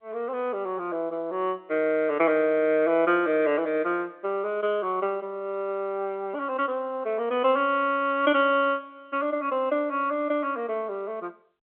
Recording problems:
telephone audio; 240 Hz to 3.4 kHz, G.711

